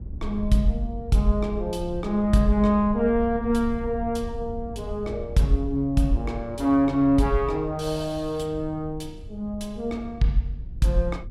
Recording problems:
low-frequency rumble; below 84 Hz, SNR 13 dB

